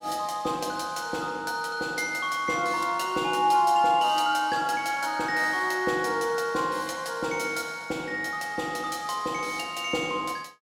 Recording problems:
none

